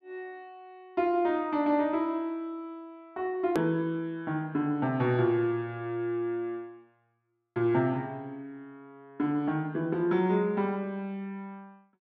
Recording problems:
edit click; at 3.5 s

